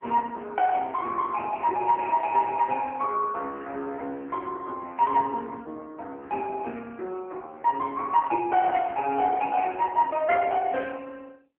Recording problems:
phone line; 240 Hz to 2.5 kHz, AMR-NB

